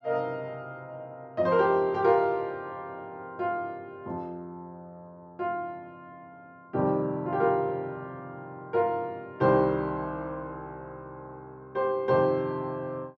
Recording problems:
none

